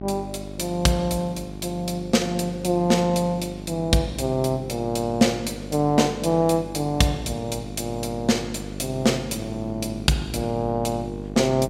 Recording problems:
electrical hum; 50 Hz, harmonics up to 800 Hz, SNR 12 dB

